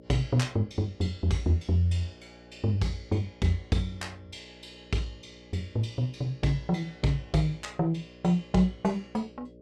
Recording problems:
hum; 60 Hz, harmonics up to 600 Hz, SNR 23 dB

